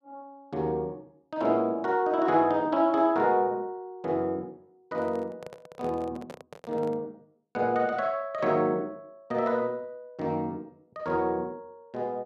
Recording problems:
microphone handling noise; from 5 to 7 s; peak -10 dB vs average level

